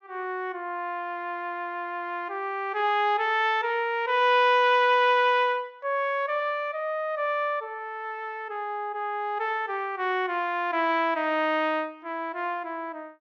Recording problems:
treble cut off; nothing above 6.9 kHz

